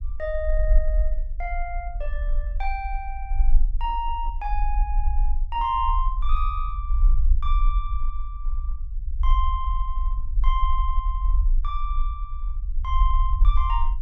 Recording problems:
low-frequency rumble; below 44 Hz, SNR -4 dB

